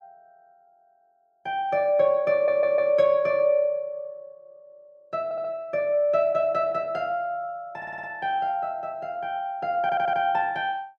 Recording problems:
audio stuttering; 4 times, first at 2.5 s

